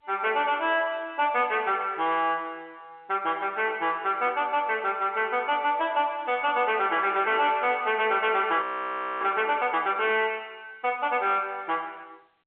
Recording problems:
phone line; 240 Hz to 3.4 kHz, G.711
distorted audio; soft clipping, signal-to-distortion ratio 10 dB
frozen audio; at 8.5 s for 0.5 s

